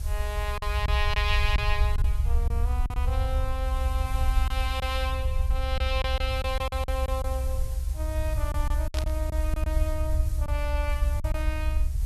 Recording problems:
background hiss; SNR 15 dB
low-frequency rumble; below 68 Hz, SNR -4 dB
packet loss; 6% of the sound replaced, filled with silence
burst of static; at 9 s; peak +2 dB vs average level

